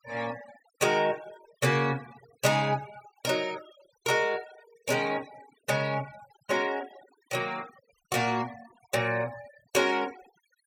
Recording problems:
denoising artefacts; signal-to-artefact ratio 19 dB

